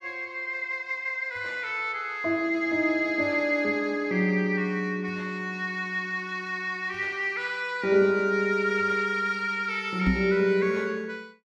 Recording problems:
microphone bump; at 10 s; peak +3 dB vs average level

